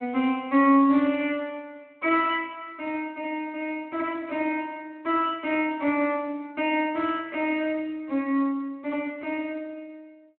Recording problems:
telephone audio; 150 Hz to 3.4 kHz, Speex

